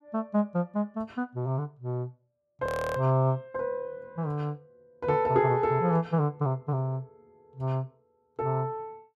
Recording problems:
frozen audio; at 2.5 s

